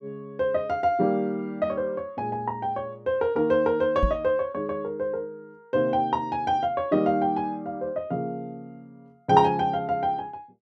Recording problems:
microphone thump; at 4 s; peak +4 dB vs average level

